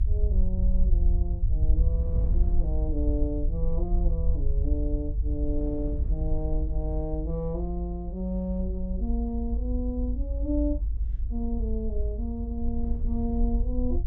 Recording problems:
rumble; below 58 Hz, SNR -4 dB
wind noise; below 250 Hz, SNR 15 dB

